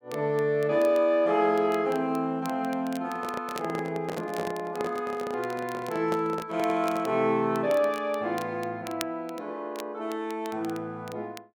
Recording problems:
crackling; vinyl, SNR 20 dB
handling noise; from 3 to 7 s; peak -2 dB vs average level

